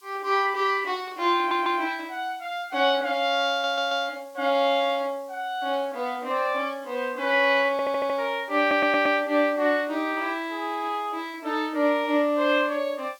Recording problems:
background hiss; SNR 30 dB
stutter; 4 times, first at 1.5 s

